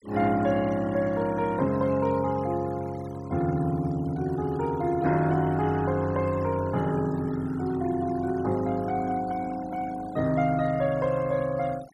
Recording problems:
noise reduction artefacts; signal-to-artefact ratio 21 dB

